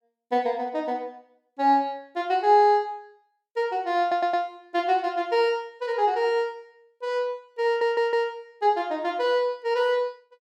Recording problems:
stutter; at 4 s and at 7.5 s

